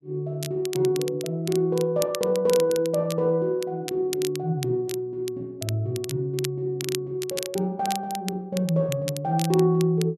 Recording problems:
crackle; vinyl, SNR 12 dB

